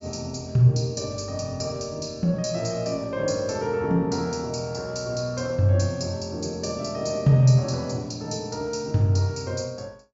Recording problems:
treble missing; nothing above 8 kHz

